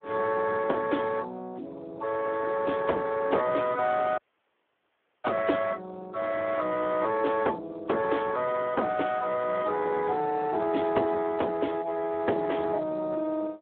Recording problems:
phone line; 300 Hz to 2.9 kHz, Speex
audio cutting out; at 4 s for 1 s

